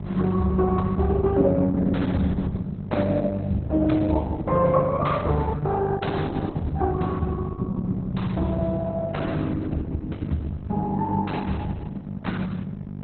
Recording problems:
codec artefacts; Opus, then MP2, log-spectral distance 3 dB
hum; 50 Hz, harmonics up to 650 Hz, SNR 7 dB

